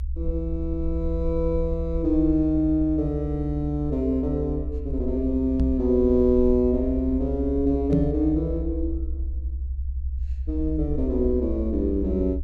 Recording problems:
rumble; below 68 Hz, strongest tone 66 Hz, SNR 6 dB
knock on the microphone; at 5.5 s and at 8 s; peak +4 dB vs average level

